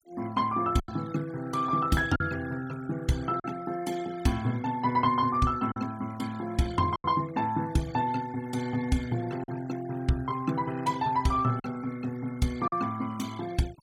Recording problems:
denoising artefacts; signal-to-artefact ratio 18 dB
lost packets; 3% of the sound replaced, filled with silence

